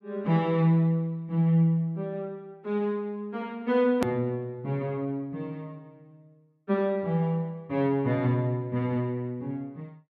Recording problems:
edit click; at 4 s

